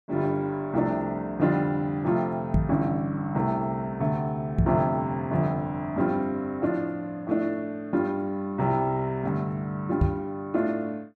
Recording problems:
knock on the microphone; at 2.5 s, at 4.5 s and at 10 s; peak +8 dB vs average level

